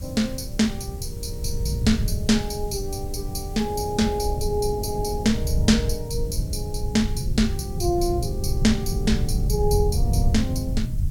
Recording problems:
hiss; SNR 23 dB
low-frequency rumble; below 110 Hz, SNR 2 dB

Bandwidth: 17 kHz